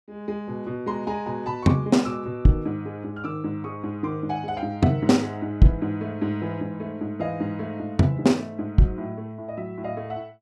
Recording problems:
none

